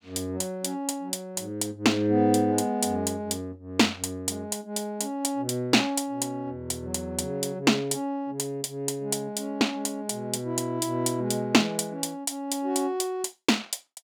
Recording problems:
none

